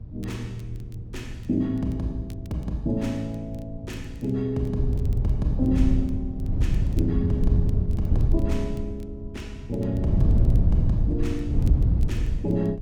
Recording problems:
wind noise; below 110 Hz, SNR -4 dB
crackling; vinyl, SNR 29 dB

